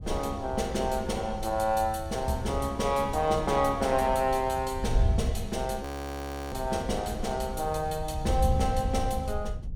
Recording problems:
wind on the microphone; below 94 Hz, SNR 7 dB
frozen audio; at 6 s for 0.5 s

